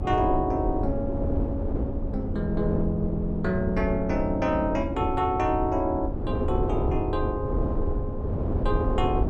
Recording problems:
rumble; below 96 Hz, SNR 8 dB
wind noise; below 340 Hz, SNR 3 dB

